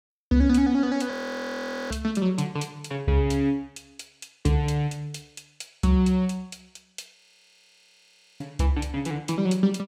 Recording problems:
audio freezing; at 1 s for 1 s and at 7 s for 1 s

